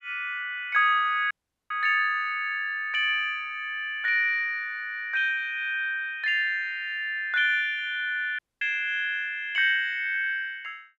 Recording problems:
audio cutting out; at 1.5 s and at 8.5 s

